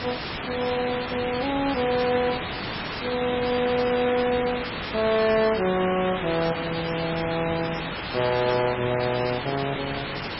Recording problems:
codec artefacts; MP3, log-spectral distance 18 dB, nothing above 4.5 kHz
distorted audio; hard clipping, uneven, signal-to-distortion ratio 10 dB
background hiss; SNR 5 dB

